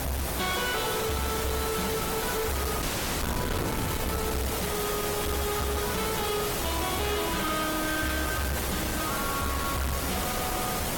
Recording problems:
lossy compression; Opus, log-spectral distance 9 dB, nothing above 17 kHz
distorted audio; soft clipping, signal-to-distortion ratio 6 dB
hiss; slope -4 dB per octave, SNR 1 dB
wind on the microphone; below 1.3 kHz, SNR 5 dB
frozen audio; at 3 s

